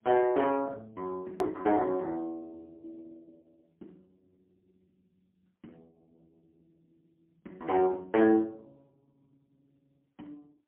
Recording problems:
phone line; 190 Hz to 3.2 kHz, AMR-NB, then MP3
edit click; at 1.5 s

